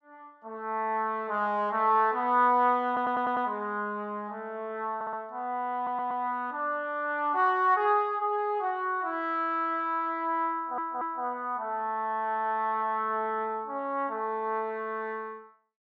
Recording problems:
audio stuttering; 4 times, first at 3 s

